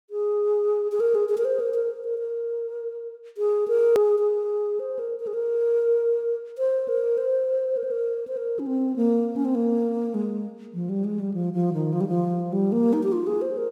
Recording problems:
click at an edit; at 4 s

